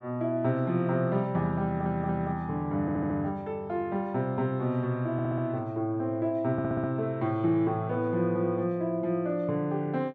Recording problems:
audio stuttering; 4 times, first at 1.5 s

